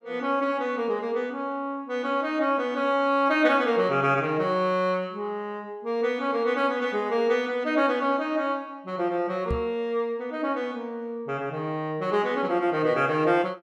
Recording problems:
microphone thump; at 9.5 s; peak -1 dB vs average level

